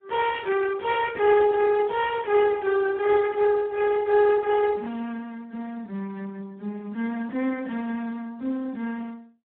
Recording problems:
telephone audio; 240 Hz to 2 kHz, Speex

